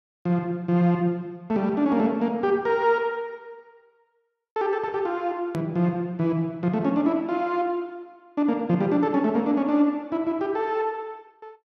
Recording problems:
click at an edit; at 5.5 s

